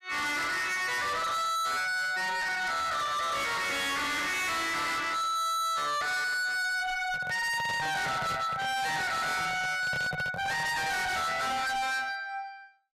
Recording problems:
distorted audio; hard clipping, signal-to-distortion ratio 5 dB
handling noise; from 7 to 11 s; peak -4 dB vs average level

